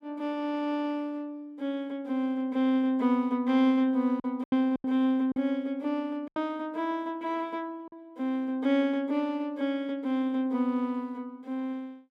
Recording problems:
lost packets; 3% of the sound replaced, filled with silence

